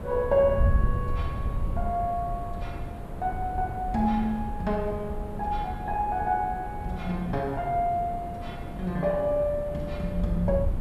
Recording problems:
hiss; SNR 12 dB
wind noise; below 92 Hz, SNR 6 dB

